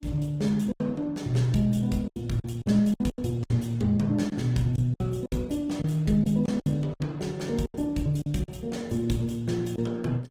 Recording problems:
lossy codec; Opus, log-spectral distance 2 dB
packet loss; 9% of the sound replaced, filled with silence

